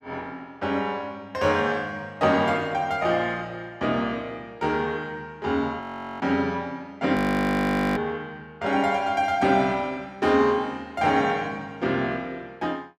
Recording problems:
frozen audio; at 6 s and at 7 s for 1 s

